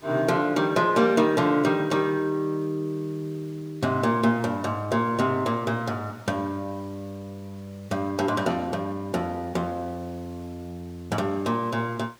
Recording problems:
background hiss; slope -3 dB per octave, SNR 28 dB

